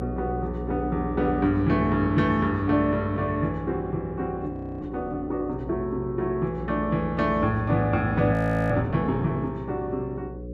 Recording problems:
hum; 60 Hz, harmonics up to 540 Hz, SNR 10 dB
frozen audio; at 4.5 s and at 8.5 s

